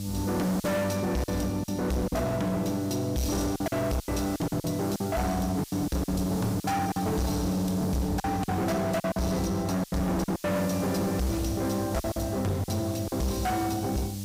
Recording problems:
distortion; hard clipping, signal-to-distortion ratio 7 dB
hum; 50 Hz, harmonics up to 600 Hz, SNR 8 dB
background hiss; slope +6 dB per octave, SNR 15 dB
packet loss; 9% of the sound replaced, filled with silence

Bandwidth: 15.5 kHz